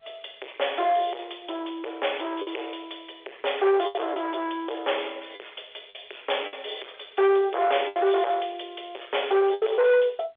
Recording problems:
telephone audio; 340 Hz to 3.6 kHz, G.711
distortion; soft clipping, signal-to-distortion ratio 8 dB
lost packets; 5% of the sound replaced, filled with the last packet

